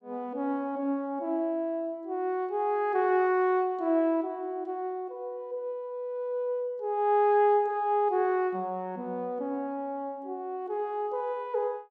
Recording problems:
none

